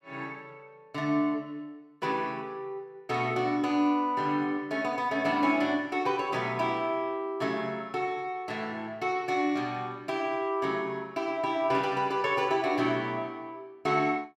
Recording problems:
none

